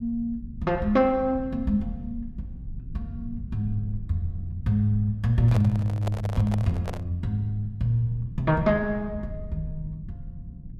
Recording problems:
rumble; below 130 Hz, SNR 14 dB
microphone handling noise; from 5.5 to 7 s; peak -3 dB vs average level

